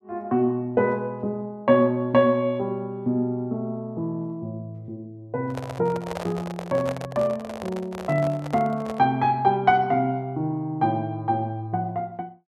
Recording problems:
microphone handling noise; from 5.5 to 9 s; peak -3 dB vs average level

